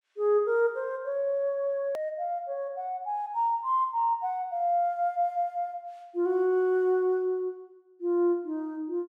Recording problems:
click at an edit; at 2 s

